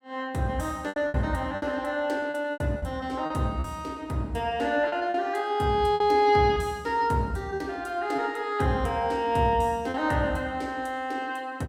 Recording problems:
packet loss; 6% of the sound replaced, filled with repeated pitch periods

